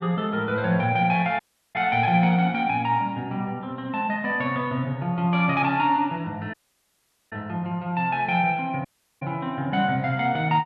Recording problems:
dropout; at 1.5 s, at 6.5 s for 1 s and at 9 s

